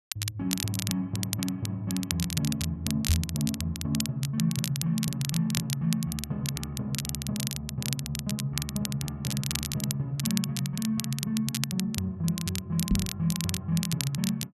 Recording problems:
crackling; vinyl, SNR 4 dB
microphone bump; at 3 s and at 13 s; peak +8 dB vs average level

